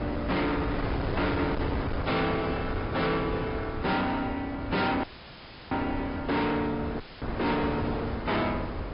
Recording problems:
treble missing; nothing above 5.2 kHz
codec artefacts; AAC, log-spectral distance 3 dB
distorted audio; hard clipping, signal-to-distortion ratio 6 dB
wind on the microphone; below 760 Hz, SNR 4 dB
audio cutting out; at 5 s for 0.5 s and at 7 s; filled with static

